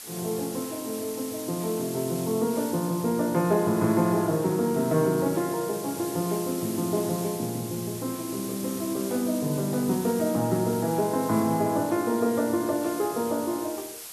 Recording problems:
hiss; slope +1 dB per octave, SNR 11 dB

